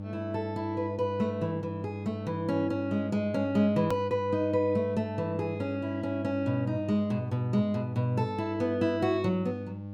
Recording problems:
hum; 50 Hz, harmonics up to 900 Hz, SNR 9 dB
click at an edit; at 4 s

